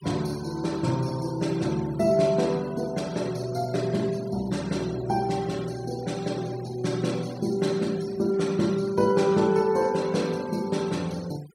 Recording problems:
denoising artefacts; signal-to-artefact ratio 20 dB

